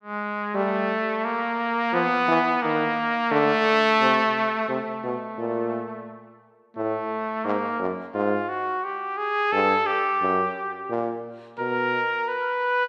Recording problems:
none

